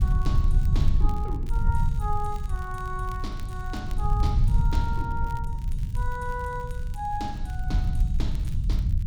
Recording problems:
low-frequency rumble; below 84 Hz, SNR -6 dB
wind noise; below 80 Hz, SNR 5 dB
crackling; vinyl, SNR 19 dB

